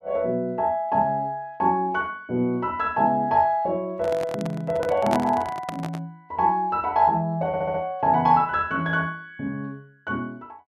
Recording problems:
handling noise; from 4 to 6 s; peak +1 dB vs average level
audio stuttering; at 7.5 s

